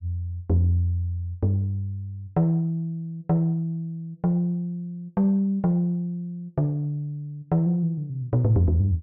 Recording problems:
none

